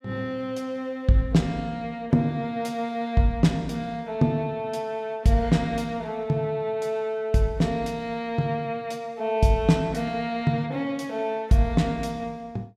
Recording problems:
none

